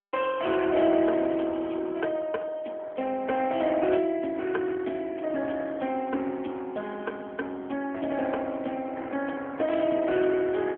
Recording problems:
telephone audio; 220 Hz to 3.3 kHz, AMR-NB

